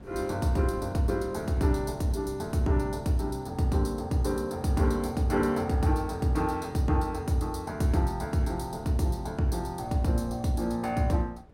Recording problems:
wind noise; below 310 Hz, SNR 22 dB

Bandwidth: 16.5 kHz